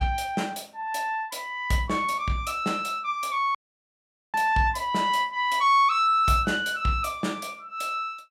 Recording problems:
dropout; at 3.5 s for 1 s

